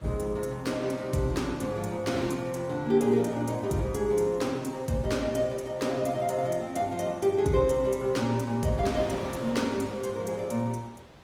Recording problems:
lossy codec; Opus, log-spectral distance 3 dB, nothing above 19 kHz
wind on the microphone; below 1.6 kHz, SNR 19 dB

